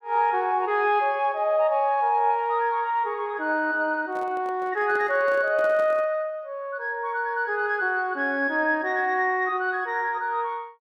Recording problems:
handling noise; from 4 to 6 s; peak -12 dB vs average level

